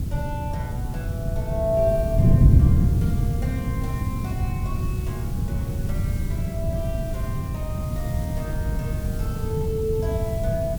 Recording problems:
hiss; slope -3 dB per octave, SNR 13 dB
wind on the microphone; below 150 Hz, SNR -7 dB

